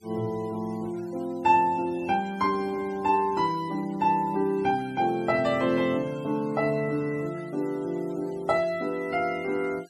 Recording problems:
noise reduction artefacts; signal-to-artefact ratio 25 dB

